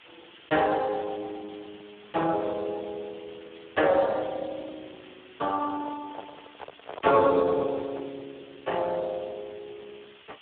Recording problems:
telephone audio; 240 Hz to 2.5 kHz, Speex
hiss; SNR 22 dB
handling noise; from 5.5 to 8 s; peak -7 dB vs average level

